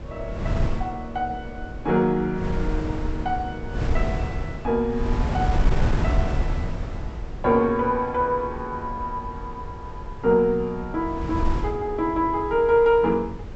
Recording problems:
treble cut off; nothing above 7.8 kHz
electrical hum; 50 Hz, harmonics up to 550 Hz, SNR 23 dB
wind on the microphone; below 130 Hz, SNR 6 dB

